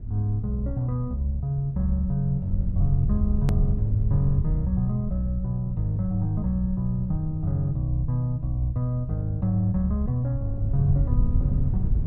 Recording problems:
rumble; below 92 Hz, SNR 5 dB
hard cut with a click; at 3.5 s

